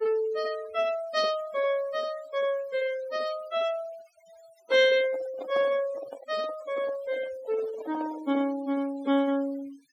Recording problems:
noise reduction artefacts; signal-to-artefact ratio 19 dB
microphone handling noise; from 4.5 to 8.5 s; peak -7 dB vs average level

